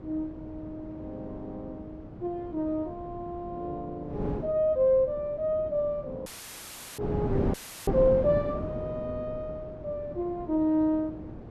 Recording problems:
wind on the microphone; below 390 Hz, SNR 8 dB
audio cutting out; at 6.5 s for 0.5 s and at 7.5 s; filled with static

